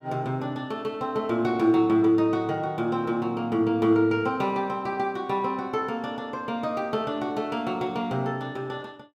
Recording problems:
none

